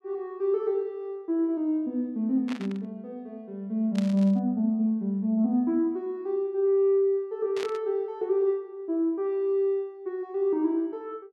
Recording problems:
static burst; at 2.5 s, at 4 s and at 7.5 s; peak -8 dB vs average level

